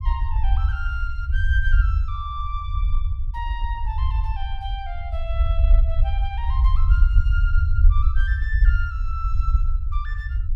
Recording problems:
rumble; below 64 Hz, SNR -10 dB

